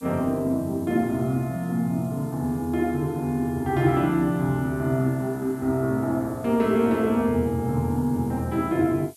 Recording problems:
hiss; slope +7 dB per octave, SNR 25 dB

